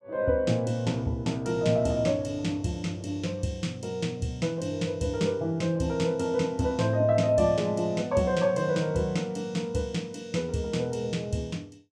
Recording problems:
none

